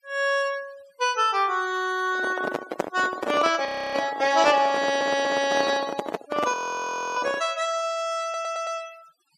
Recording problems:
denoising artefacts; signal-to-artefact ratio 20 dB
handling noise; from 2 to 7.5 s; peak +3 dB vs average level
audio freezing; at 3.5 s and at 6.5 s for 0.5 s
audio stuttering; at 5 s and at 8 s

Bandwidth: 14.5 kHz